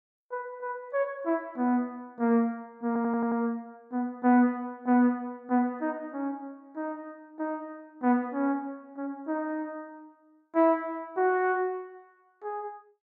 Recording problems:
audio stuttering; at 3 s

